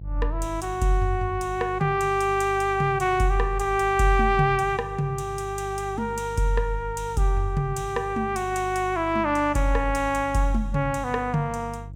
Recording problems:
hum; 50 Hz, harmonics up to 350 Hz, SNR 14 dB

